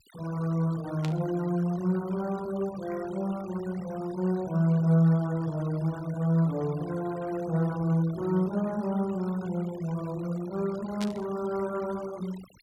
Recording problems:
noise reduction artefacts; signal-to-artefact ratio 19 dB
static burst; at 1 s and at 11 s; peak -5 dB vs average level

